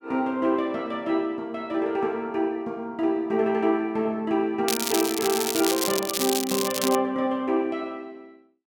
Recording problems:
crackle; from 4.5 to 7 s; loose cable, SNR 2 dB

